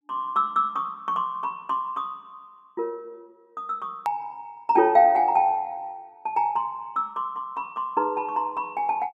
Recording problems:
hard cut with a click; at 4 s

